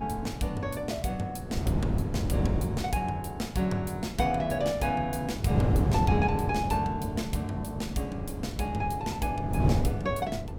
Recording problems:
wind on the microphone; below 240 Hz, SNR 1 dB

